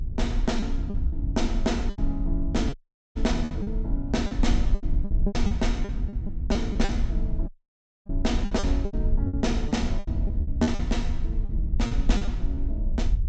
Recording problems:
treble cut off; nothing above 8 kHz
low-frequency rumble; below 56 Hz, strongest tone 30 Hz, SNR 8 dB
wind on the microphone; below 62 Hz, SNR 0 dB
lost packets; 12% of the sound replaced, filled with repeated pitch periods
audio cutting out; at 2.5 s and at 7.5 s for 0.5 s

